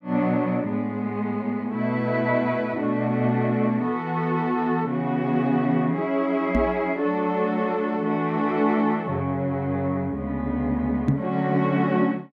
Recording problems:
microphone thump; at 6.5 s and at 11 s; peak +5 dB vs average level

